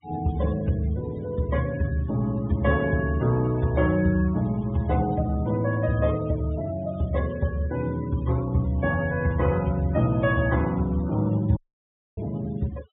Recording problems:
low-pass filter; nothing above 4 kHz
denoising artefacts; signal-to-artefact ratio 20 dB
audio cutting out; at 12 s for 0.5 s

